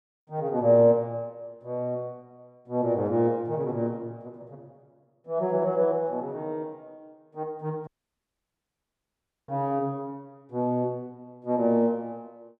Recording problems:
audio cutting out; at 8 s for 1.5 s

